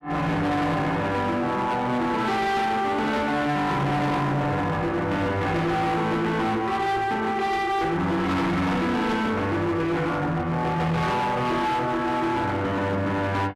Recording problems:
distortion; hard clipping, uneven, signal-to-distortion ratio 8 dB

